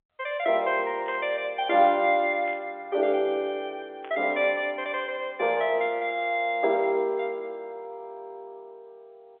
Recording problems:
phone line; 320 Hz to 3.4 kHz, G.711
static burst; at 1 s, at 2.5 s and at 4 s; peak -14 dB vs average level

